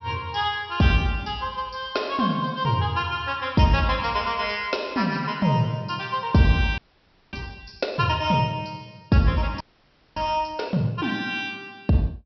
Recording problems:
treble cut off; nothing above 5.7 kHz
frozen audio; at 7 s for 0.5 s and at 9.5 s for 0.5 s

